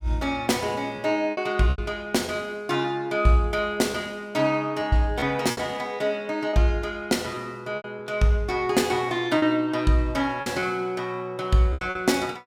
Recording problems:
lost packets; 6% of the sound replaced, filled with repeated pitch periods

